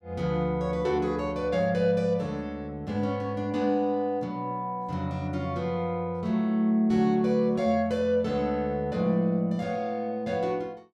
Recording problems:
none

